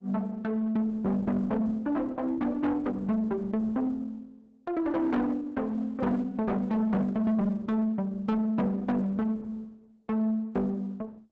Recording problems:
lossy codec; Opus, log-spectral distance 2 dB
distortion; soft clipping, signal-to-distortion ratio 11 dB

